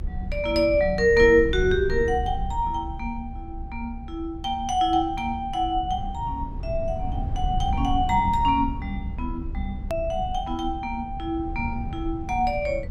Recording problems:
rumble; below 94 Hz, SNR 8 dB
edit click; at 10 s

